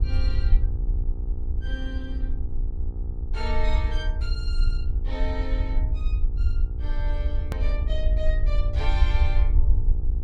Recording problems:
electrical hum; 60 Hz, harmonics up to 1.3 kHz, SNR 8 dB
rumble; below 60 Hz, SNR -10 dB
edit click; at 7.5 s

